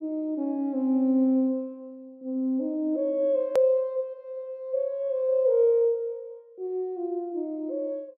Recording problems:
hard cut with a click; at 3.5 s

